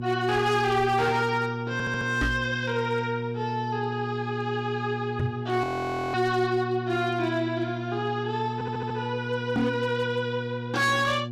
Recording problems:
distorted audio; hard clipping, signal-to-distortion ratio 11 dB
hum; 60 Hz, harmonics up to 720 Hz, SNR 7 dB
audio stuttering; at 1.5 s and at 8.5 s
microphone bump; at 2 s, at 5 s and at 9.5 s; peak +5 dB vs average level
audio freezing; at 5.5 s for 0.5 s

